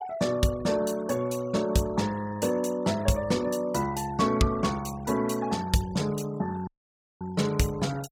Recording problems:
denoising artefacts; signal-to-artefact ratio 19 dB
dropout; at 6.5 s for 0.5 s

